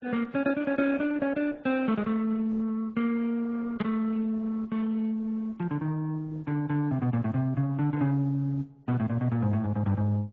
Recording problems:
lossy codec; Opus, then AAC, log-spectral distance 2 dB

